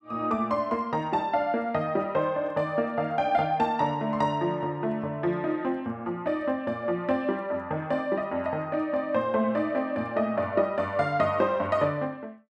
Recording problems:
none

